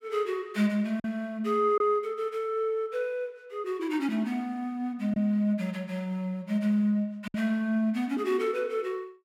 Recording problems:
lost packets; 1.5% of the sound replaced, filled with silence

